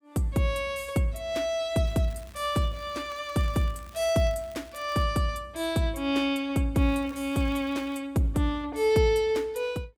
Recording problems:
crackle; from 2 to 5 s and from 7 to 8 s; loose cable, SNR 26 dB

